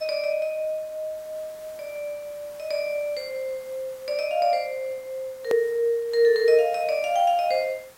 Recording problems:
hiss; slope -3 dB per octave, SNR 24 dB
edit click; at 5.5 s

